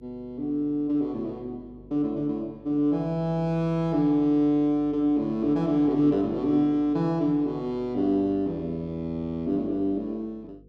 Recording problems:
hum; 50 Hz, harmonics up to 500 Hz, SNR 25 dB

